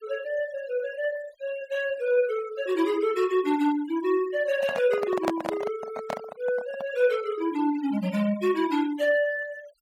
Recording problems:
denoising artefacts; signal-to-artefact ratio 19 dB
handling noise; from 4.5 to 7 s; peak +4 dB vs average level

